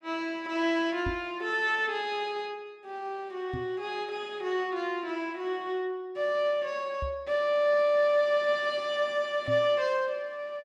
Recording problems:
knock on the microphone; 4 times, first at 1 s; peak -2 dB vs average level

